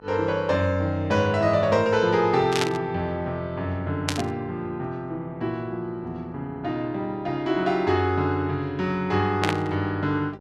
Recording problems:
hum; 50 Hz, harmonics up to 1.5 kHz, SNR 24 dB
static burst; at 2.5 s, at 4 s and at 9.5 s; peak +4 dB vs average level

